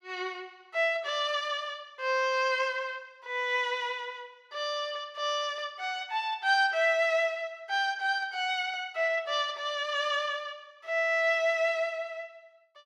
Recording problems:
none

